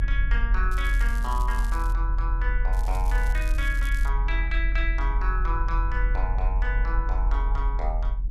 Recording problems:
low-frequency rumble; below 44 Hz, strongest tone 42 Hz, SNR -6 dB
crackle; from 0.5 to 2 s and from 2.5 to 4 s; loose cable, SNR 15 dB

